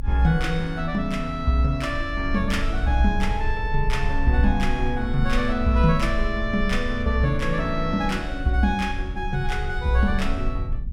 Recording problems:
low-frequency rumble; below 50 Hz, strongest tone 20 Hz, SNR 7 dB

